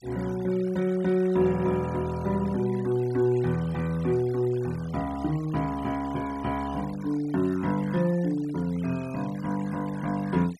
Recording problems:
denoising artefacts; signal-to-artefact ratio 20 dB

